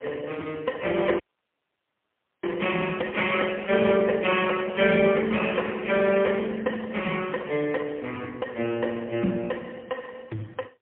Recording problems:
telephone audio; 240 Hz to 3.3 kHz, AMR-NB, then MP3
dropout; at 1 s for 1 s

